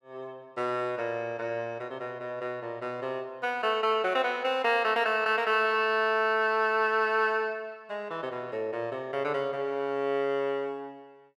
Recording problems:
none

